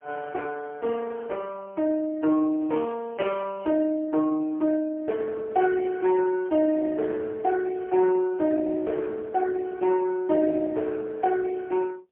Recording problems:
phone line; 260 Hz to 2.2 kHz, AMR-NB, then MP3

